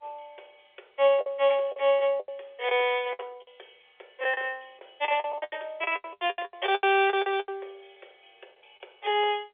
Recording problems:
telephone audio; 340 Hz to 3.6 kHz, G.711
packet loss; 14% of the sound replaced, filled with the last packet

